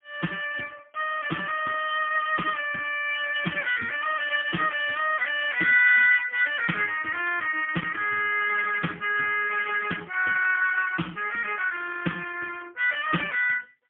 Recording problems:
phone line; 190 Hz to 3.3 kHz, AMR-NB, then MP3

